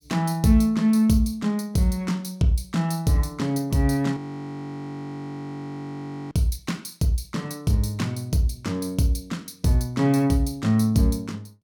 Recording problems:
frozen audio; at 4 s for 2 s

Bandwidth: 17.5 kHz